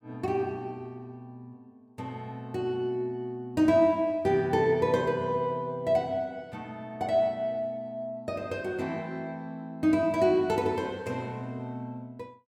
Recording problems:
none

